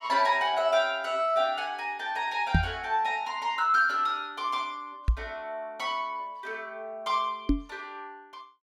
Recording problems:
microphone bump; at 2.5 s, at 5 s and at 7.5 s; peak +8 dB vs average level

